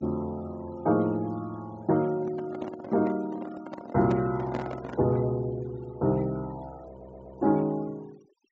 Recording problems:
treble cut off; nothing above 7.6 kHz
denoising artefacts; signal-to-artefact ratio 23 dB
microphone handling noise; from 2 to 5 s; peak -2 dB vs average level
stutter; at 7 s

